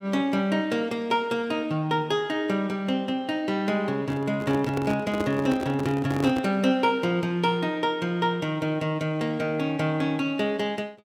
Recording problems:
handling noise; from 4 to 6.5 s; peak 0 dB vs average level

